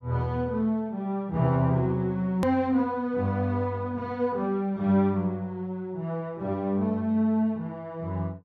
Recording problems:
edit click; at 2.5 s

